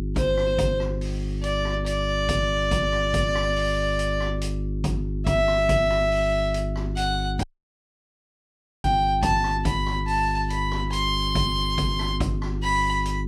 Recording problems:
hum; 50 Hz, harmonics up to 400 Hz, SNR 4 dB
dropout; at 7.5 s for 1.5 s

